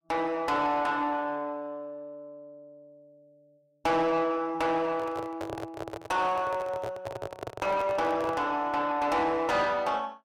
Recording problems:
distortion; soft clipping, signal-to-distortion ratio 12 dB
microphone handling noise; from 5 to 8.5 s; peak -4 dB vs average level

